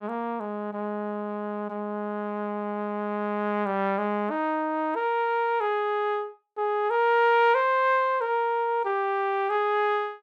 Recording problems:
none

